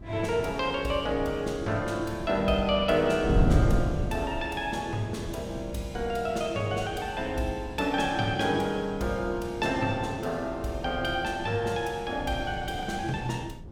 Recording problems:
wind on the microphone; below 180 Hz, SNR 7 dB

